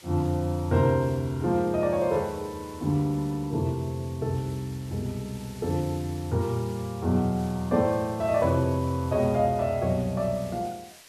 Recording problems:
hiss; slope +1 dB per octave, SNR 22 dB

